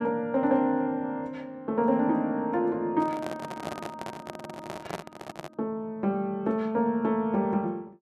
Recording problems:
microphone handling noise; from 3 to 5.5 s; peak -2 dB vs average level

